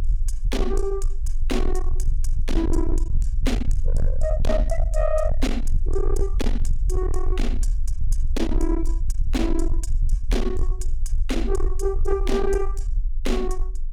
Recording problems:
distortion; soft clipping, signal-to-distortion ratio 8 dB
rumble; below 42 Hz, strongest tone 22 Hz, SNR -1 dB

